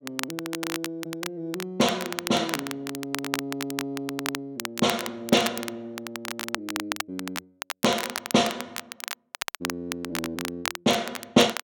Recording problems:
crackle; vinyl, SNR 5 dB

